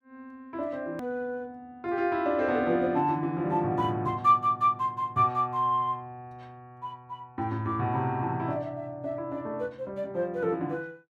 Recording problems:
click at an edit; at 1 s

